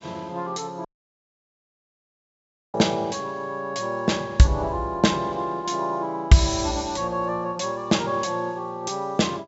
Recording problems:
treble cut off; nothing above 8 kHz
dropout; at 1 s for 2 s

